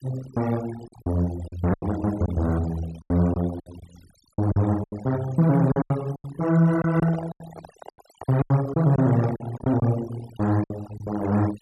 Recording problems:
denoising artefacts; signal-to-artefact ratio 18 dB
packet loss; 11% of the sound replaced, filled with silence
microphone handling noise; from 6.5 to 10 s; peak -8 dB vs average level

